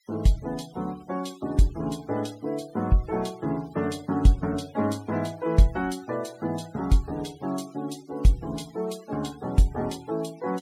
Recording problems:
noise reduction artefacts; signal-to-artefact ratio 23 dB

